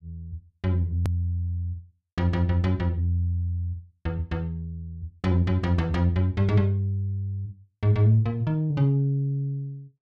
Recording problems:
hard cut with a click; at 1 s

